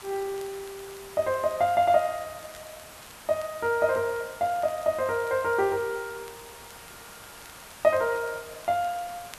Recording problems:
background hiss; SNR 17 dB
crackle; vinyl, SNR 30 dB

